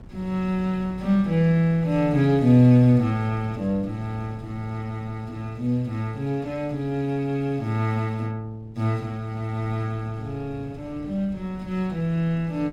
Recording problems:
wind on the microphone; below 220 Hz, SNR 20 dB

